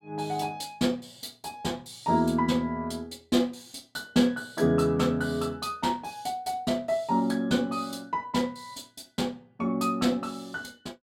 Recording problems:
none

